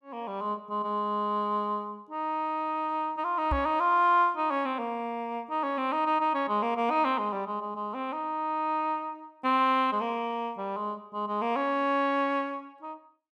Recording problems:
microphone bump; at 3.5 s; peak 0 dB vs average level

